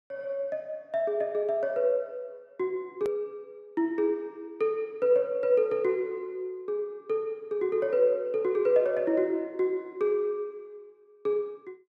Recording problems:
hard cut with a click; at 3 s

